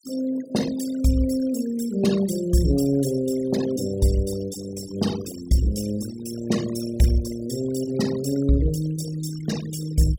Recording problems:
denoising artefacts; signal-to-artefact ratio 14 dB

